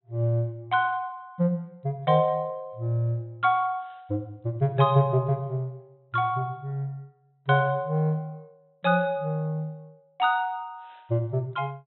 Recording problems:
treble missing; nothing above 4.1 kHz

